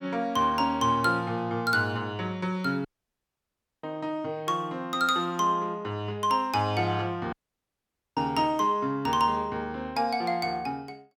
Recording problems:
dropout; at 3 s for 1 s and at 7.5 s for 1 s

